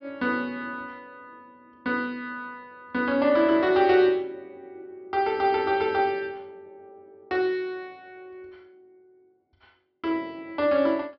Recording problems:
low-pass filter; nothing above 5.5 kHz

